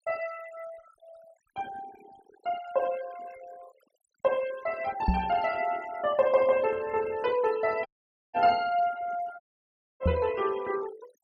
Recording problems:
noise reduction artefacts; signal-to-artefact ratio 19 dB
microphone thump; at 5 s and at 10 s; peak +6 dB vs average level
dropout; at 8 s and at 9.5 s for 0.5 s

